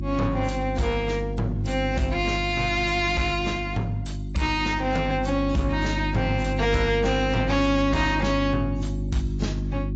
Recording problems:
lossy compression; AAC, log-spectral distance 3 dB, nothing above 7.6 kHz
distortion; soft clipping, signal-to-distortion ratio 6 dB
hum; 50 Hz, harmonics up to 350 Hz, SNR 5 dB

